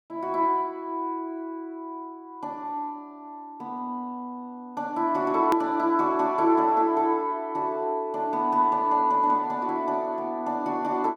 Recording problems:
hard cut with a click; at 5.5 s

